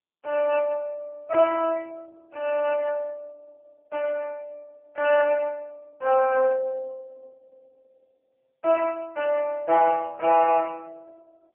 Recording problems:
telephone audio; 340 Hz to 2.9 kHz, AMR-NB

